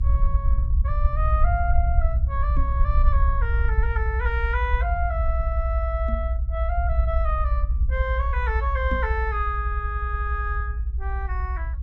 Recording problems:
rumble; below 66 Hz, SNR -5 dB
knock on the microphone; at 2.5 s, at 6 s and at 9 s; peak 0 dB vs average level

